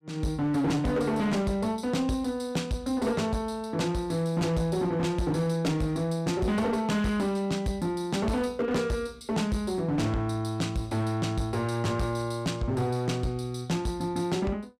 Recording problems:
distortion; hard clipping, signal-to-distortion ratio 10 dB

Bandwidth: 15 kHz